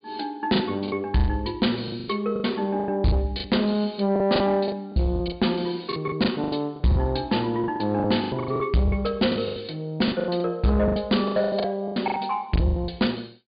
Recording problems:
treble cut off; nothing above 4.8 kHz
distorted audio; soft clipping, signal-to-distortion ratio 11 dB
packet loss; 17% of the sound replaced, filled with the last packet

